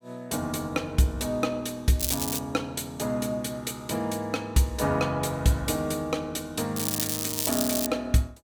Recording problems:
crackling; at 2 s and from 7 to 8 s; loose cable, SNR 0 dB

